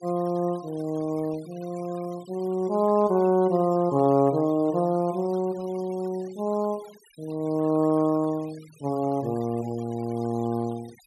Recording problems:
noise reduction artefacts; signal-to-artefact ratio 24 dB

